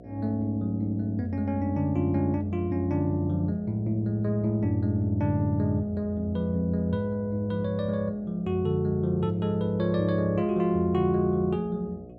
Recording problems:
hum; 60 Hz, harmonics up to 720 Hz, SNR 20 dB

